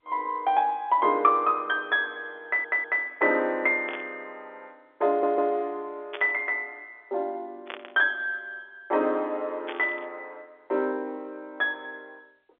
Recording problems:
telephone audio; 280 Hz to 4 kHz, G.711
stutter; at 2.5 s and at 5 s
burst of static; 4 times, first at 4 s; peak -6 dB vs average level

